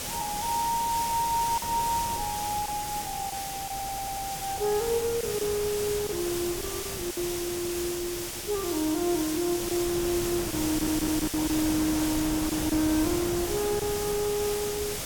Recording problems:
background hiss; SNR 4 dB
wind noise; below 750 Hz, SNR 10 dB
packet loss; 3% of the sound replaced, filled with silence
audio stuttering; at 3.5 s and at 11 s

